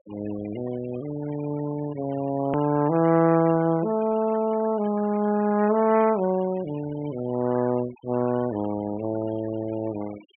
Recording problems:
low-pass filter; nothing above 3.2 kHz
noise reduction artefacts; signal-to-artefact ratio 20 dB
click at an edit; at 2.5 s

